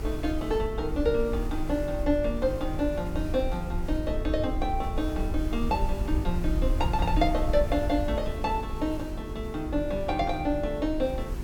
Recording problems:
hum; 50 Hz, harmonics up to 400 Hz, SNR 12 dB
hiss; slope -5 dB per octave, SNR 18 dB
wind noise; below 66 Hz, SNR 5 dB

